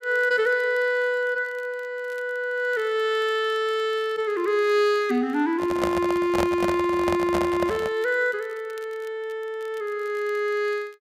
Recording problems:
crackling; vinyl, SNR 30 dB
microphone handling noise; from 5.5 to 8 s; peak +1 dB vs average level

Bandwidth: 15.5 kHz